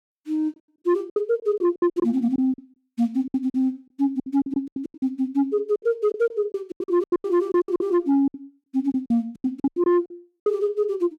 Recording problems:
distortion; soft clipping, signal-to-distortion ratio 12 dB
lost packets; 18% of the sound replaced, filled with silence

